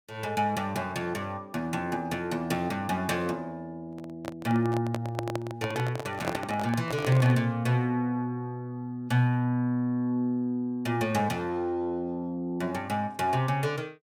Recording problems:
handling noise; from 4 to 7.5 s; peak +3 dB vs average level

